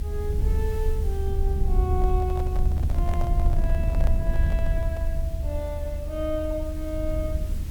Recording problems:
hiss; SNR 16 dB
low-frequency rumble; below 74 Hz, SNR -6 dB
handling noise; from 2 to 5 s; peak 0 dB vs average level

